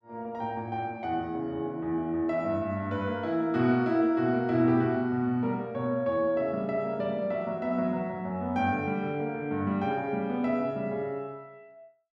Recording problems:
none

